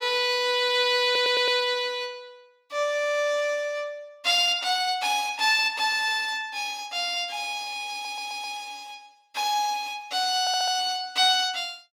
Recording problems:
stutter; at 1 s, at 8 s and at 10 s

